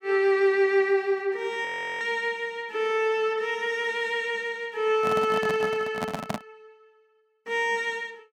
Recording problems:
audio freezing; at 1.5 s
microphone handling noise; from 5 to 6.5 s; peak 0 dB vs average level

